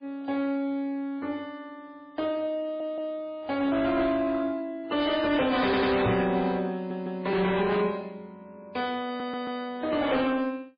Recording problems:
codec artefacts; MP3, then MP3, log-spectral distance 2 dB, nothing above 4.1 kHz
distorted audio; soft clipping, signal-to-distortion ratio 10 dB
stutter; 4 times, first at 2.5 s
knock on the microphone; at 6 s; peak +4 dB vs average level

